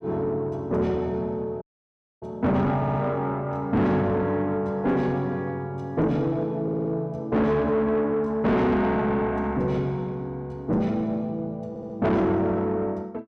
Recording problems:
distortion; soft clipping, signal-to-distortion ratio 7 dB
dropout; at 1.5 s for 0.5 s
audio stuttering; at 3 s, at 6.5 s and at 12 s

